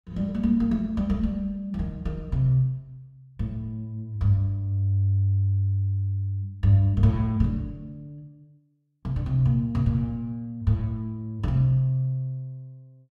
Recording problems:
none

